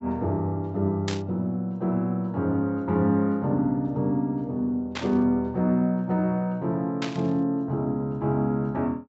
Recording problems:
low-pass filter; nothing above 7.8 kHz
static burst; at 1 s, at 5 s and at 7 s; peak -2 dB vs average level

